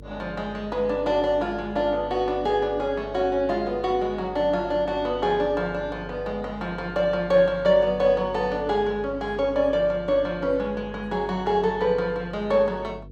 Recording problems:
hum; 50 Hz, harmonics up to 500 Hz, SNR 18 dB

